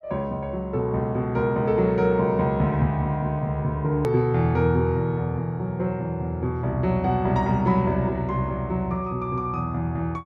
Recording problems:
edit click; at 4 s

